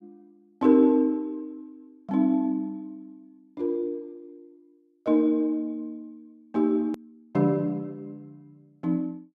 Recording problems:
edit click; at 7 s

